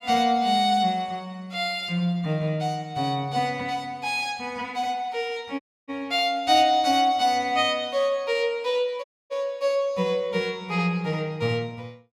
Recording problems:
dropout; at 5.5 s and at 9 s

